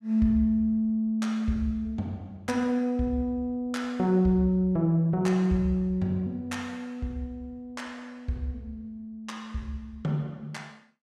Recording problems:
none

